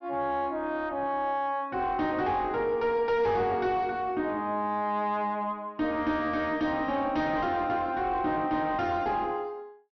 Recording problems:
treble missing; nothing above 6.1 kHz
distortion; soft clipping, signal-to-distortion ratio 9 dB

